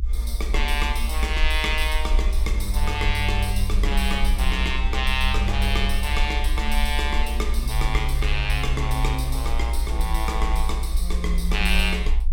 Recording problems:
rumble; below 58 Hz, SNR 0 dB

